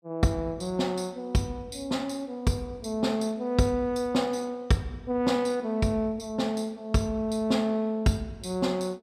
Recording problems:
none

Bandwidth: 14.5 kHz